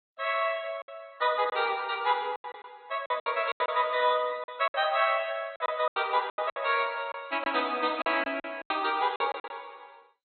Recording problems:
codec artefacts; MP2, log-spectral distance 5 dB, nothing above 3.9 kHz
packet loss; 12% of the sound replaced, filled with silence

